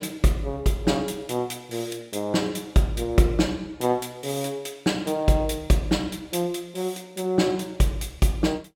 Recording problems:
none

